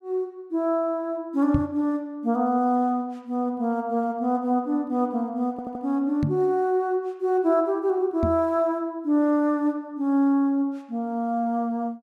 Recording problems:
microphone bump; at 1.5 s, at 6 s and at 8 s; peak +3 dB vs average level
stutter; at 5.5 s

